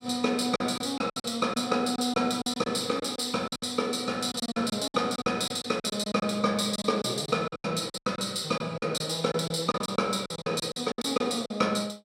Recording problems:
packet loss; 14% of the sound replaced, filled with silence

